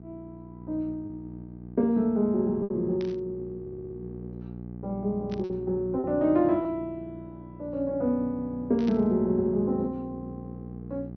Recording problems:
low-pass filter; nothing above 6.2 kHz
hum; 60 Hz, harmonics up to 780 Hz, SNR 14 dB
lost packets; 2% of the sound replaced, filled with repeated pitch periods
static burst; at 3 s, at 5.5 s and at 9 s; peak -12 dB vs average level
audio stuttering; at 3.5 s

